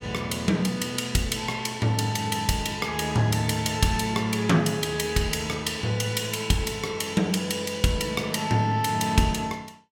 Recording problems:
none

